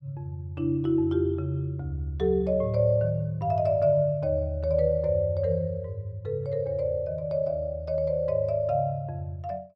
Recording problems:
none

